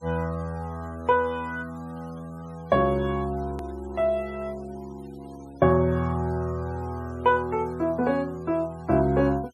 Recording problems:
denoising artefacts; signal-to-artefact ratio 27 dB
hard cut with a click; at 3.5 s

